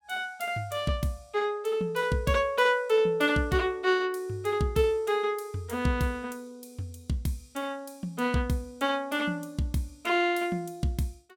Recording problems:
none

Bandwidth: 17.5 kHz